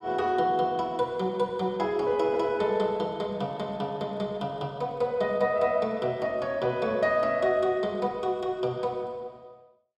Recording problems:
none

